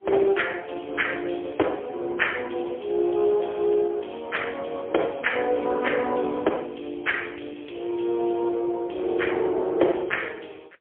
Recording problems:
telephone audio; 280 Hz to 3.3 kHz, AMR-NB, then MP3

